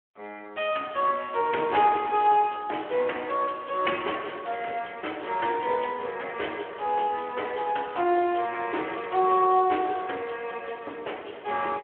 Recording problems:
telephone audio; 280 Hz to 3.2 kHz, Speex

